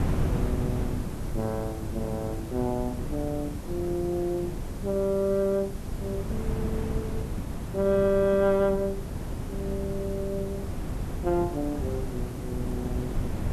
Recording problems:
hiss; slope +3 dB per octave, SNR 20 dB
wind noise; below 220 Hz, SNR 4 dB

